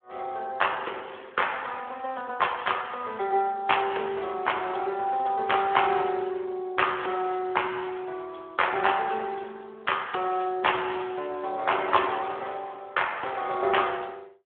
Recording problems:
telephone audio; 300 Hz to 3.4 kHz, Speex

